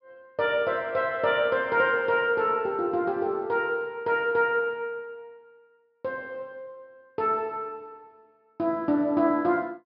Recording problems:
treble missing; nothing above 5.5 kHz

